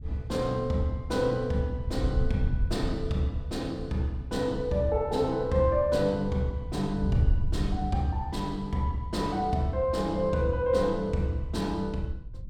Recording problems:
wind on the microphone; below 86 Hz, SNR 8 dB

